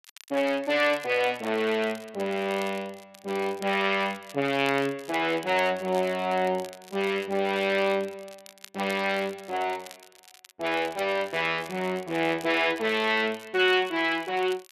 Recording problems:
crackling; vinyl, SNR 22 dB

